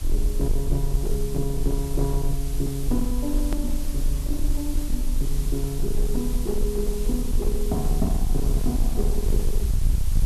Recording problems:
distorted audio; hard clipping, signal-to-distortion ratio 8 dB
hiss; slope -1 dB per octave, SNR 10 dB
rumble; below 46 Hz, strongest tone 24 Hz, SNR -1 dB
hard cut with a click; at 3.5 s

